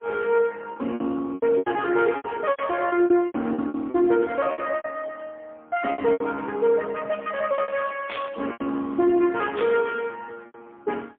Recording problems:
phone line; 220 Hz to 3.3 kHz, AMR-NB, then MP3
packet loss; 14% of the sound replaced, filled with repeated pitch periods
burst of static; at 2.5 s, at 8 s and at 9.5 s; peak -5 dB vs average level

